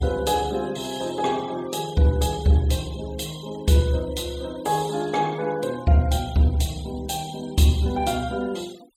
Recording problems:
noise reduction artefacts; signal-to-artefact ratio 21 dB

